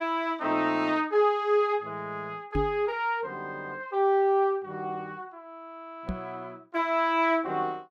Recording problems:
microphone thump; at 2.5 s and at 6 s; peak 0 dB vs average level

